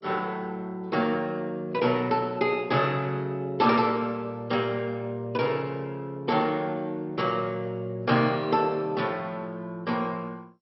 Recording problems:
codec artefacts; MP2, log-spectral distance 2 dB, nothing above 5.5 kHz

